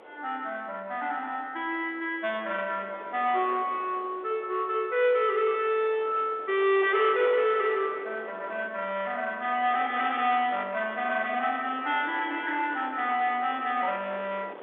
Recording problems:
telephone audio; 320 Hz to 3.7 kHz, G.711
distortion; soft clipping, signal-to-distortion ratio 13 dB
wind noise; below 1.3 kHz, SNR 18 dB

